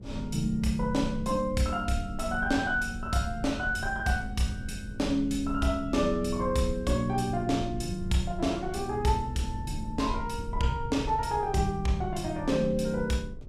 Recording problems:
mains hum; 60 Hz, harmonics up to 1.3 kHz, SNR 26 dB
low-frequency rumble; below 96 Hz, SNR 11 dB

